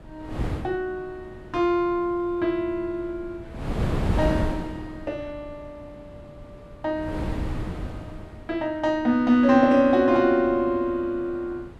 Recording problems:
wind noise; below 340 Hz, SNR 8 dB

